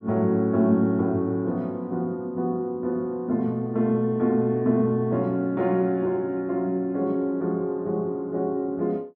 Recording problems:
none

